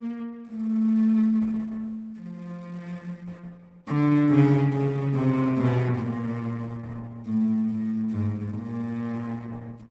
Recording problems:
lossy compression; Opus, log-spectral distance 2 dB, nothing above 8 kHz

